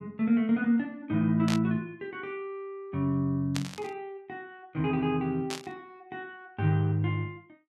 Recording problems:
burst of static; at 1.5 s, at 3.5 s and at 5.5 s; peak -1 dB vs average level

